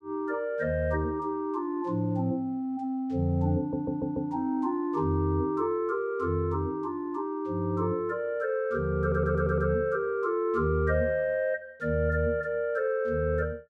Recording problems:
audio stuttering; at 3.5 s and at 9 s

